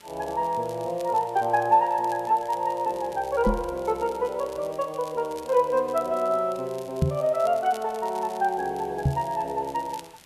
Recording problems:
hiss; SNR 27 dB
crackling; vinyl, SNR 23 dB
microphone bump; at 3.5 s, at 7 s and at 9 s; peak +7 dB vs average level

